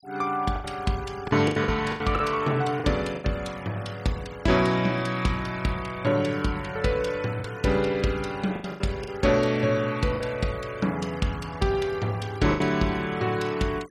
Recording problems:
noise reduction artefacts; signal-to-artefact ratio 21 dB
packet loss; 6% of the sound replaced, filled with the last packet

